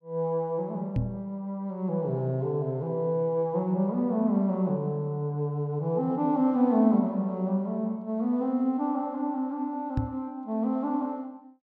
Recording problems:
knock on the microphone; at 1 s and at 10 s; peak +3 dB vs average level

